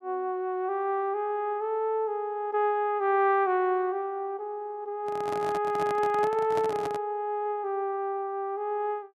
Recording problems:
handling noise; from 5 to 7 s; peak -4 dB vs average level

